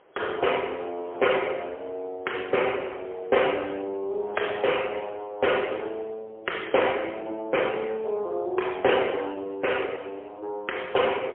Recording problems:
telephone audio; 320 Hz to 3.3 kHz, AMR-NB, then MP3
wind on the microphone; below 1.1 kHz, SNR 22 dB

